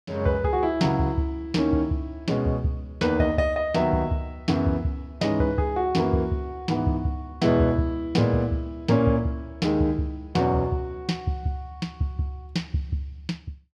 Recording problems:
none

